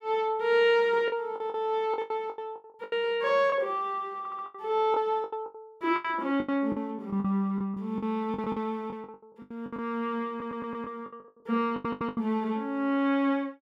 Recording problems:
packet loss; 14% of the sound replaced, filled with the last packet
stutter; at 4 s, at 10 s and at 12 s

